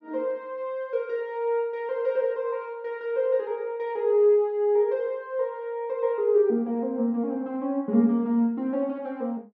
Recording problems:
none

